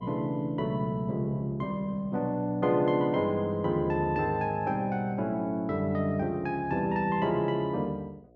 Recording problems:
mains hum; 60 Hz, harmonics up to 720 Hz, SNR 27 dB

